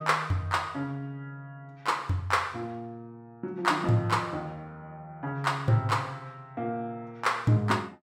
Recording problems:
none

